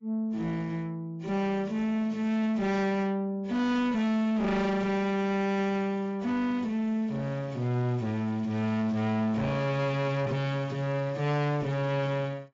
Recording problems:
codec artefacts; AAC, log-spectral distance 2 dB
distorted audio; soft clipping, signal-to-distortion ratio 7 dB

